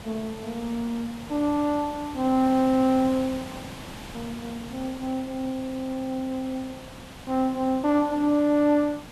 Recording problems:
hiss; slope -4 dB per octave, SNR 15 dB

